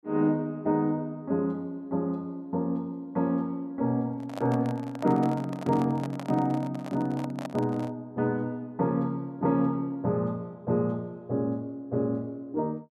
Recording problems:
microphone handling noise; from 4 to 8 s; peak -4 dB vs average level

